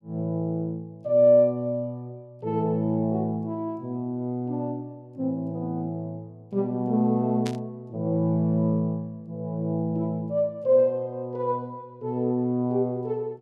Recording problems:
static burst; at 7.5 s; peak -6 dB vs average level

